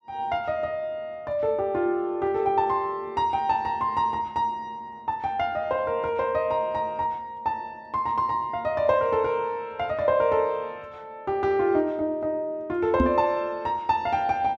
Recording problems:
microphone bump; at 13 s; peak +7 dB vs average level

